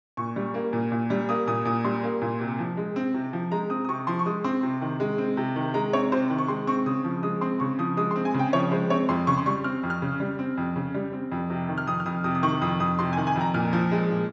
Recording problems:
low-pass filter; nothing above 8 kHz

